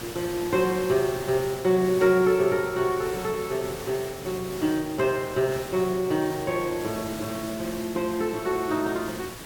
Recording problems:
background hiss; slope -3 dB per octave, SNR 12 dB

